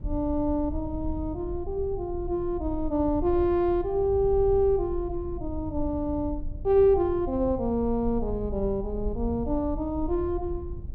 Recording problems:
rumble; below 74 Hz, SNR 11 dB

